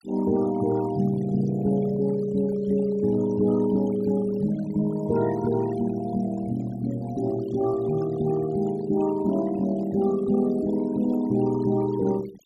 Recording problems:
noise reduction artefacts; signal-to-artefact ratio 17 dB

